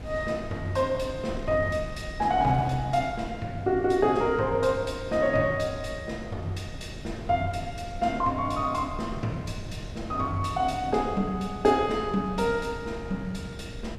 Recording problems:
wind noise; below 210 Hz, SNR 12 dB

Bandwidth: 13 kHz